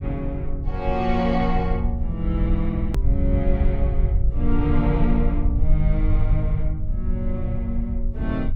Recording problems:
low-frequency rumble; below 62 Hz, SNR -1 dB
click at an edit; at 3 s

